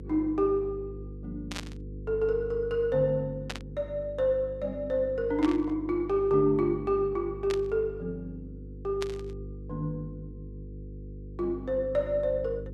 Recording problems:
electrical hum; 50 Hz, harmonics up to 500 Hz, SNR 13 dB
burst of static; 5 times, first at 1.5 s; peak -3 dB vs average level

